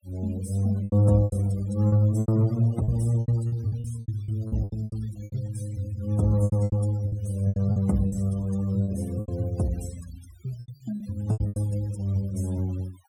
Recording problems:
denoising artefacts; signal-to-artefact ratio 21 dB
packet loss; 13% of the sound replaced, filled with repeated pitch periods

